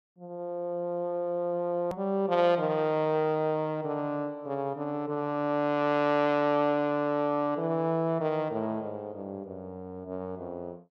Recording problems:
hard cut with a click; at 2 s

